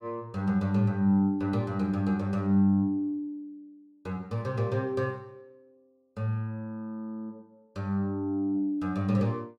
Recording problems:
none

